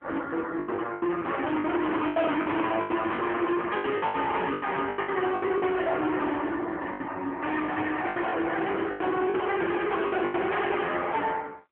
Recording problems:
telephone audio; 240 Hz to 3.4 kHz, AMR-NB
distorted audio; hard clipping, signal-to-distortion ratio 7 dB
packet loss; 12% of the sound replaced, filled with the last packet

